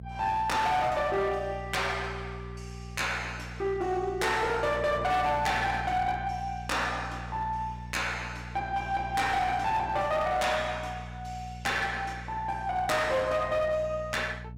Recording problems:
distortion; hard clipping, uneven, signal-to-distortion ratio 10 dB
hum; 60 Hz, harmonics up to 480 Hz, SNR 13 dB

